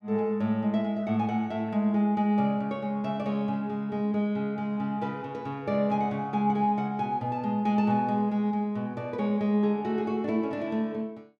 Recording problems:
none

